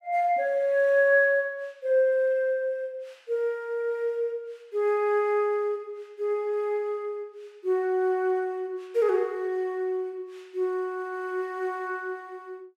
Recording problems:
none

